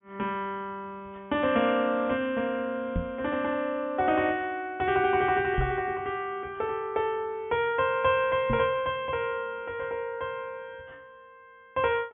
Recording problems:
low-pass filter; nothing above 3.5 kHz
microphone bump; at 3 s, at 5.5 s and at 8.5 s; peak +2 dB vs average level

